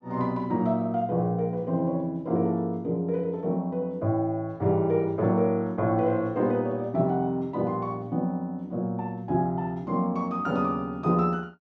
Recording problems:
none

